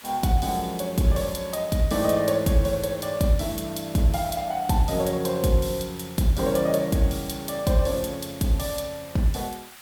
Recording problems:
background hiss; SNR 19 dB

